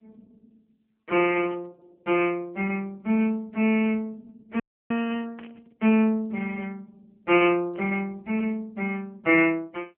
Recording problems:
phone line; 190 Hz to 3.1 kHz, AMR-NB
burst of static; at 1.5 s, at 5.5 s and at 8 s; peak -18 dB vs average level
audio cutting out; at 4.5 s

